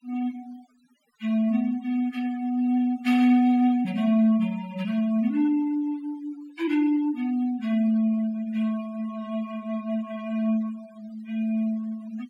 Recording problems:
noise reduction artefacts; signal-to-artefact ratio 24 dB

